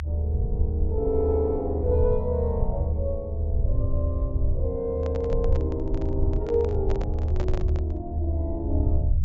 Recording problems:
treble cut off; nothing above 7.5 kHz
low-frequency rumble; below 78 Hz, SNR -2 dB
microphone handling noise; from 5 to 8 s; peak -2 dB vs average level

